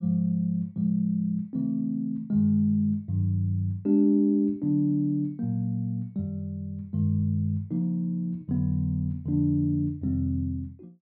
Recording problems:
none

